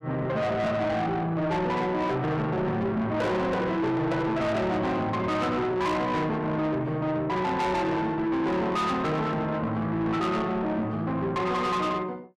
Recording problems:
distorted audio; soft clipping, signal-to-distortion ratio 8 dB

